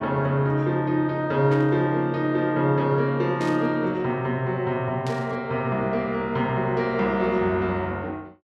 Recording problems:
static burst; at 1.5 s, at 3.5 s and at 5 s; peak -11 dB vs average level

